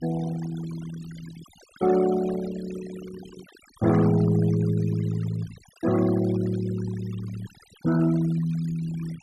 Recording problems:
noise reduction artefacts; signal-to-artefact ratio 17 dB

